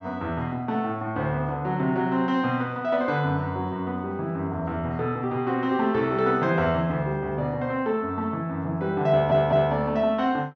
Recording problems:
stutter; at 9 s

